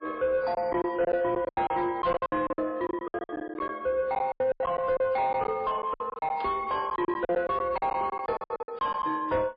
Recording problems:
lossy compression; MP3, log-spectral distance 2 dB, nothing above 4.4 kHz
distortion; soft clipping, signal-to-distortion ratio 10 dB
lost packets; 17% of the sound replaced, filled with silence
static burst; at 1.5 s and at 6.5 s; peak -12 dB vs average level

